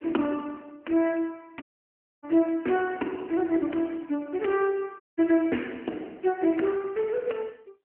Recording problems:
telephone audio; 220 Hz to 3.1 kHz, AMR-NB
dropout; at 1.5 s for 0.5 s and at 5 s

